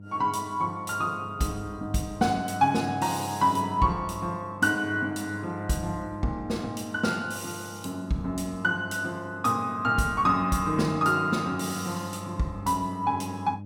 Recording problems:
hum; 50 Hz, harmonics up to 600 Hz, SNR 14 dB

